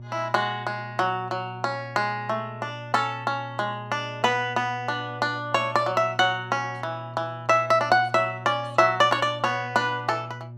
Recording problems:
hum; 60 Hz, harmonics up to 600 Hz, SNR 15 dB

